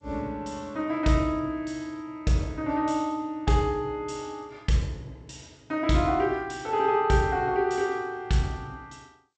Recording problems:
codec artefacts; G.722, log-spectral distance 2 dB, nothing above 8 kHz

